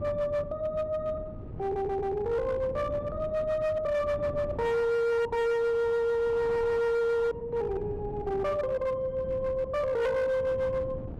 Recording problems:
distortion; hard clipping, signal-to-distortion ratio 11 dB
wind noise; below 280 Hz, SNR 13 dB
stutter; at 1.5 s

